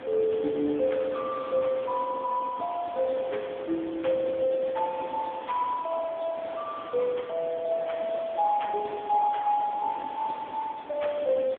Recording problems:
phone line; 190 Hz to 3.6 kHz, AMR-NB
hiss; SNR 15 dB

